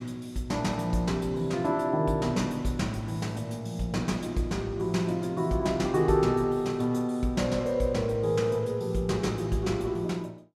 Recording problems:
none

